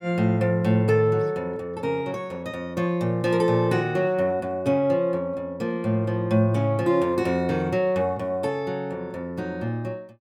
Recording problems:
none

